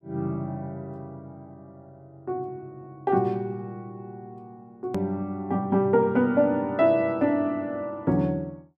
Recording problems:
edit click; at 5 s

